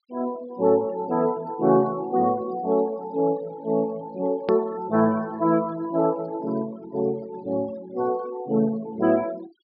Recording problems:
low-pass filter; nothing above 5.2 kHz
noise reduction artefacts; signal-to-artefact ratio 22 dB
hard cut with a click; at 4.5 s

